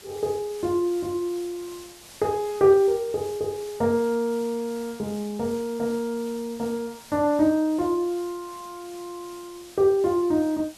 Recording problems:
background hiss; slope 0 dB per octave, SNR 20 dB

